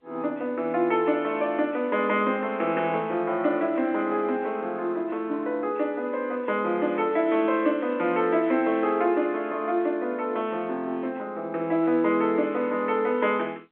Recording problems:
phone line; 240 Hz to 3.7 kHz, G.711

